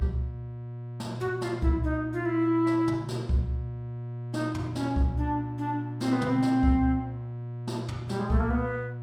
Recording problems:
hum; 60 Hz, harmonics up to 960 Hz, SNR 8 dB

